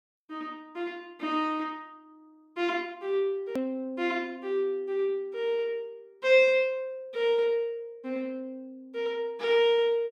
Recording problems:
edit click; at 3.5 s

